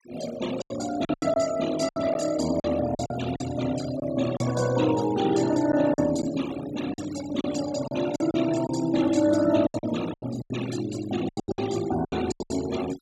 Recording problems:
denoising artefacts; signal-to-artefact ratio 12 dB
packet loss; 11% of the sound replaced, filled with silence

